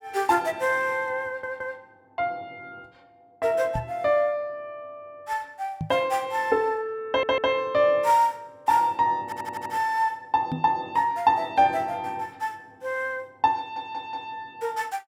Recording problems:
stutter; 4 times, first at 1.5 s
microphone thump; at 4 s, at 6 s and at 11 s; peak -1 dB vs average level

